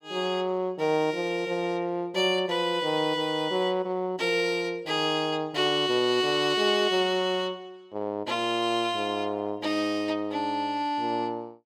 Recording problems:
none

